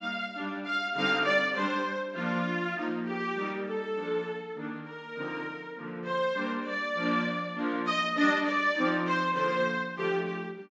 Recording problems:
treble cut off; nothing above 8 kHz

